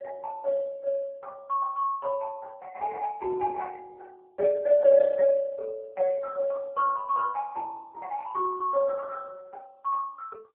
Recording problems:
phone line; 320 Hz to 2.3 kHz, AMR-NB

